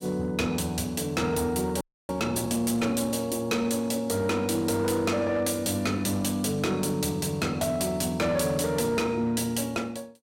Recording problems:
distorted audio; hard clipping, signal-to-distortion ratio 11 dB
audio freezing; at 2 s

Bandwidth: 16 kHz